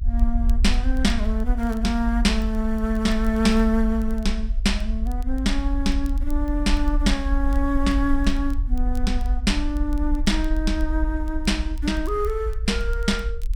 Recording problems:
rumble; below 52 Hz, SNR 2 dB
crackle; vinyl, SNR 29 dB

